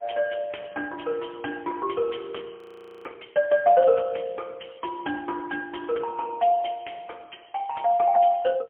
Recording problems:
telephone audio; 240 Hz to 3.3 kHz, AMR-NB, then MP3
audio freezing; at 2.5 s

